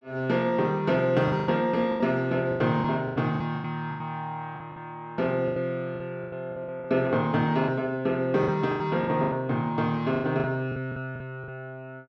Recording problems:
lost packets; 13% of the sound replaced, filled with the last packet

